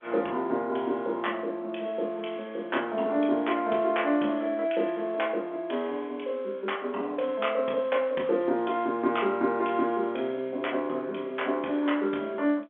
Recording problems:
telephone audio; 260 Hz to 3.5 kHz, G.711

